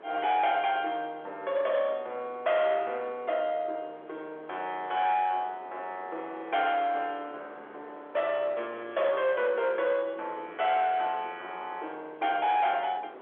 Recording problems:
telephone audio; 320 Hz to 3.5 kHz, G.711
distortion; soft clipping, signal-to-distortion ratio 11 dB
wind noise; below 1.2 kHz, SNR 19 dB

